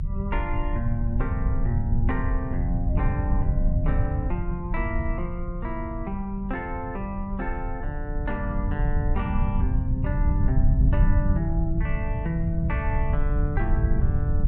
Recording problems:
low-frequency rumble; below 96 Hz, SNR -4 dB

